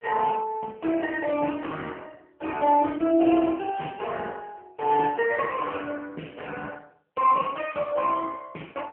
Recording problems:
phone line; 220 Hz to 2.8 kHz, AMR-NB

